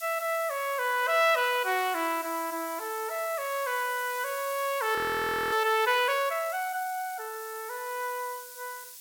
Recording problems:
background hiss; SNR 13 dB
frozen audio; at 5 s for 0.5 s

